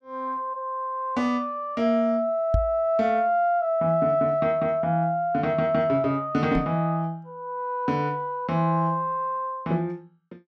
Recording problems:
microphone thump; at 2.5 s and at 6.5 s; peak +4 dB vs average level

